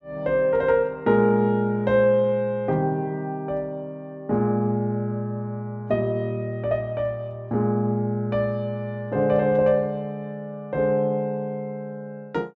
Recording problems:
none

